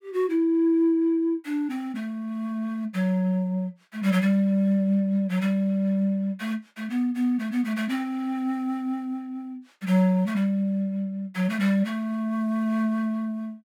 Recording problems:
none

